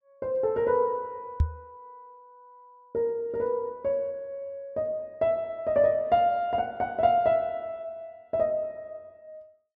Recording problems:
microphone bump; at 1.5 s; peak +7 dB vs average level

